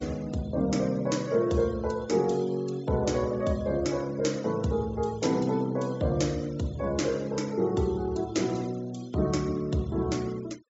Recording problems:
treble missing; nothing above 8 kHz
denoising artefacts; signal-to-artefact ratio 22 dB

